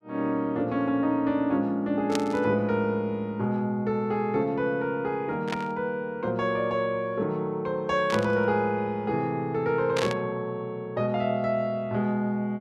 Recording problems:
burst of static; 4 times, first at 2 s; peak 0 dB vs average level

